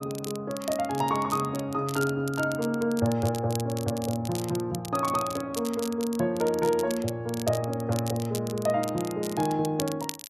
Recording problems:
crackling; vinyl, SNR 12 dB

